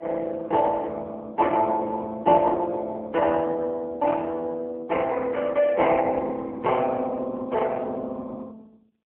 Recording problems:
telephone audio; 280 Hz to 2.6 kHz, AMR-NB

